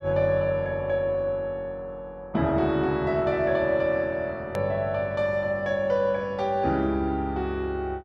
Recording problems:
click at an edit; at 4.5 s

